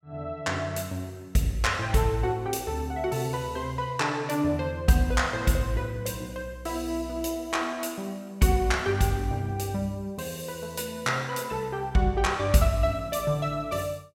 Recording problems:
none

